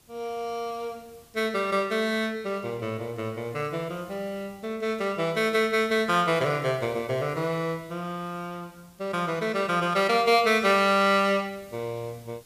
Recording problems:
hiss; slope -2 dB per octave, SNR 28 dB

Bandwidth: 15 kHz